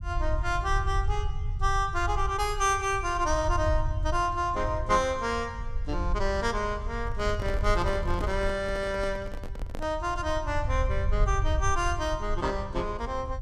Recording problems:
rumble; below 76 Hz, SNR 4 dB
handling noise; from 7 to 10 s; peak -5 dB vs average level

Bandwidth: 15.5 kHz